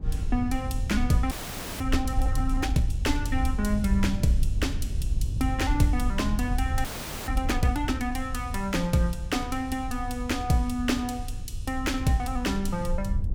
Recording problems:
low-frequency rumble; below 78 Hz, SNR 3 dB
frozen audio; at 1.5 s and at 7 s

